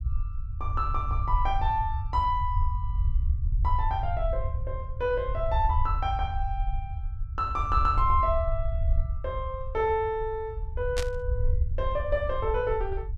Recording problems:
rumble; below 76 Hz, SNR 2 dB
static burst; at 11 s; peak 0 dB vs average level

